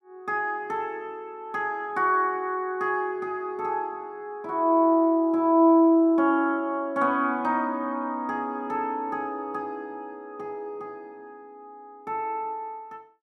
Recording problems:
none

